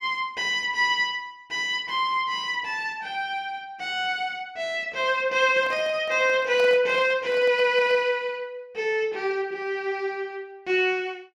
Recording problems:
microphone handling noise; from 5.5 to 8 s; peak -8 dB vs average level

